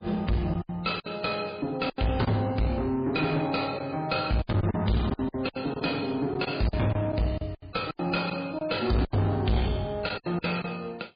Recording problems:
codec artefacts; MP3, log-spectral distance 4 dB, nothing above 4.8 kHz
distortion; soft clipping, signal-to-distortion ratio 6 dB
lost packets; 10% of the sound replaced, filled with silence

